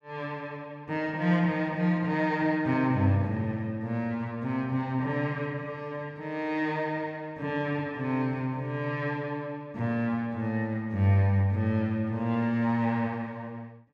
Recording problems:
none

